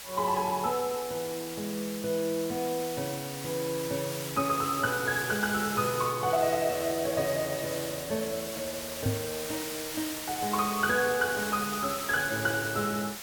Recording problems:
hiss; SNR 7 dB
microphone thump; at 9 s; peak +4 dB vs average level

